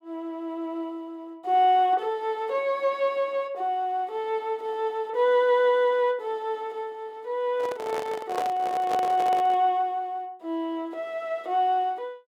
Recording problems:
handling noise; from 7.5 to 9.5 s; peak -1 dB vs average level

